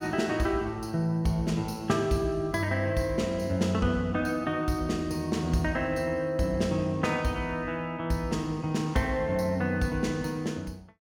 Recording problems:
none

